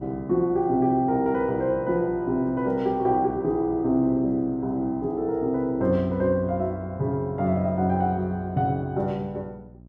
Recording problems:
hum; 60 Hz, harmonics up to 660 Hz, SNR 21 dB

